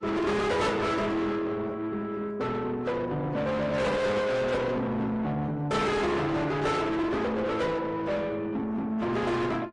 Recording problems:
codec artefacts; AAC, then AAC, log-spectral distance 2 dB, nothing above 10.4 kHz
distorted audio; soft clipping, signal-to-distortion ratio 6 dB

